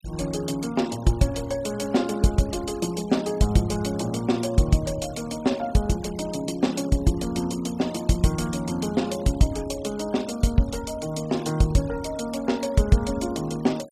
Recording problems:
noise reduction artefacts; signal-to-artefact ratio 21 dB

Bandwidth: 14.5 kHz